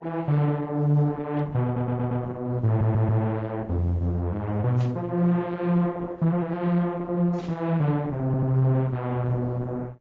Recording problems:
codec artefacts; Opus, then AAC, log-spectral distance 2 dB
stutter; at 1.5 s, at 2.5 s and at 8.5 s
burst of static; at 5 s and at 7.5 s; peak -14 dB vs average level

